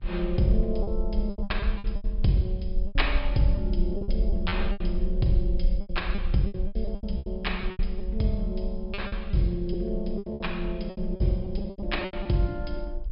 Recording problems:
treble cut off; nothing above 5.5 kHz
hum; 50 Hz, harmonics up to 1.6 kHz, SNR 28 dB
rumble; below 46 Hz, SNR 3 dB
packet loss; 14% of the sound replaced, filled with repeated pitch periods

